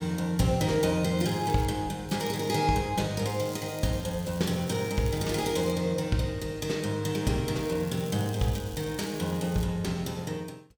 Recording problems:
crackle; 4 times, first at 1 s; loose cable, SNR 18 dB

